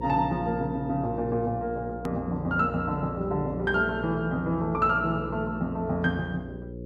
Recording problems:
electrical hum; 60 Hz, harmonics up to 540 Hz, SNR 10 dB
edit click; at 2 s

